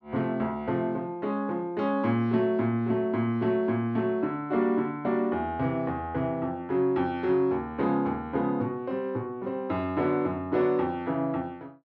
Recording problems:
none

